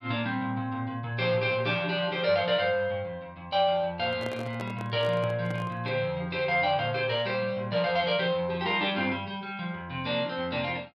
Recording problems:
microphone handling noise; from 4 to 6 s; peak -7 dB vs average level

